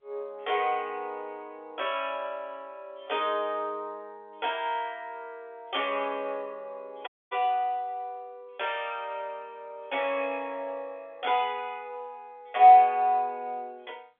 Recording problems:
telephone audio; 300 Hz to 3.5 kHz, G.711
audio cutting out; at 7 s

